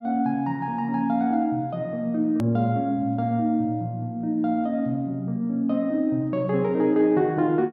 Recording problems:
edit click; at 2.5 s

